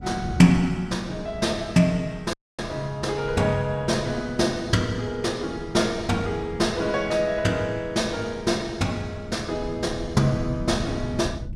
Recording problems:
wind on the microphone; below 160 Hz, SNR 14 dB
dropout; at 2.5 s

